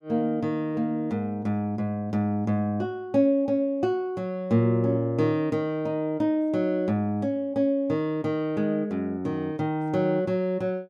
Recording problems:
none

